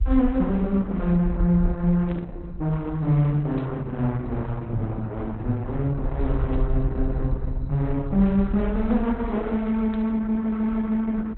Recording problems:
codec artefacts; Opus, log-spectral distance 2 dB
low-frequency rumble; below 60 Hz, SNR 6 dB
burst of static; 4 times, first at 2 s; peak -16 dB vs average level

